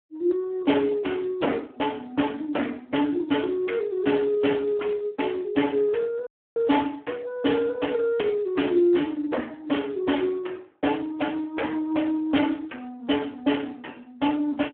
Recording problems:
phone line; 240 Hz to 3.3 kHz, Speex
distorted audio; hard clipping, signal-to-distortion ratio 10 dB
audio cutting out; at 6.5 s

